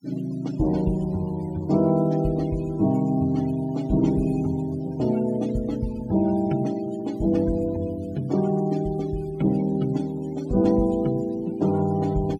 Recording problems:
noise reduction artefacts; signal-to-artefact ratio 21 dB

